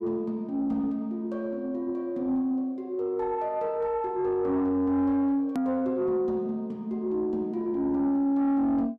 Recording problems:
distorted audio; soft clipping, signal-to-distortion ratio 10 dB
click at an edit; at 5.5 s

